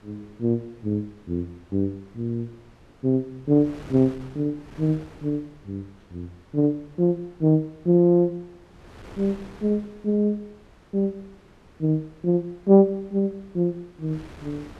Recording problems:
wind noise; below 990 Hz, SNR 25 dB

